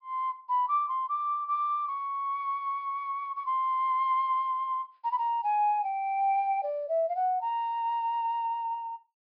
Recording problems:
treble missing; nothing above 5.5 kHz

